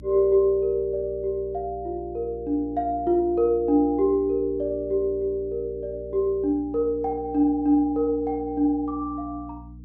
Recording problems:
electrical hum; 60 Hz, harmonics up to 300 Hz, SNR 19 dB

